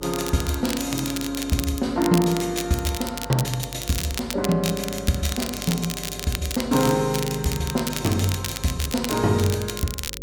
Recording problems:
hum; 50 Hz, harmonics up to 550 Hz, SNR 16 dB
crackle; vinyl, SNR 7 dB

